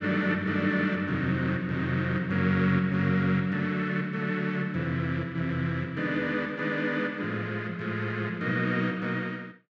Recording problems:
none

